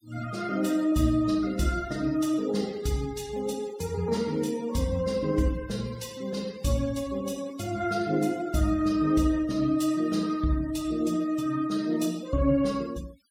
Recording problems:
denoising artefacts; signal-to-artefact ratio 21 dB

